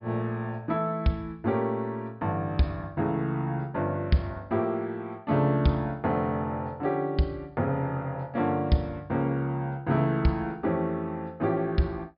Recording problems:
treble missing; nothing above 5.5 kHz

